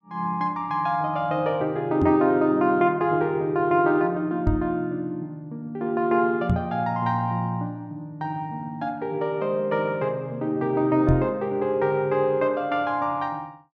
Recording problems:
microphone thump; 4 times, first at 2 s; peak +5 dB vs average level

